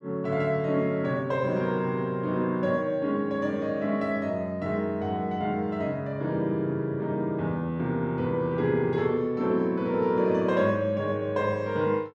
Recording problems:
none

